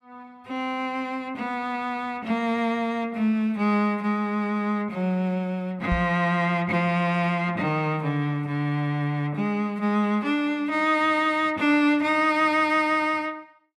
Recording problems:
microphone bump; at 6 s; peak -1 dB vs average level

